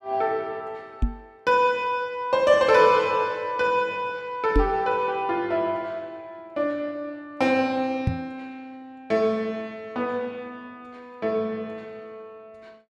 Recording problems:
microphone bump; at 1 s, at 4.5 s and at 8 s; peak +5 dB vs average level

